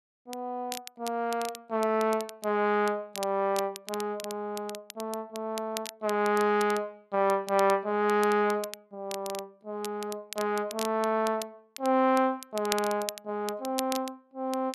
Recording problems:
crackle; vinyl, SNR 13 dB

